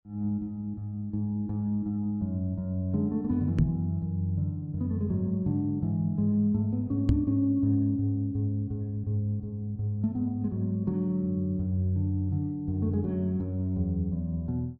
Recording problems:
microphone thump; at 3.5 s and at 7 s; peak +9 dB vs average level

